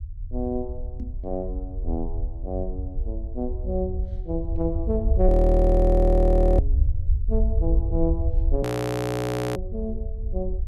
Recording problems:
low-frequency rumble; below 70 Hz, strongest tone 40 Hz, SNR 0 dB
microphone thump; at 1 s; peak -5 dB vs average level
frozen audio; at 5.5 s for 1.5 s and at 8.5 s for 1 s

